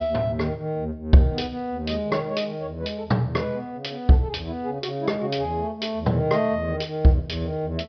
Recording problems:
treble cut off; nothing above 5.5 kHz

